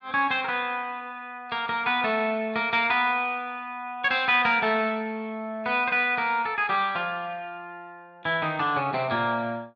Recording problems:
none

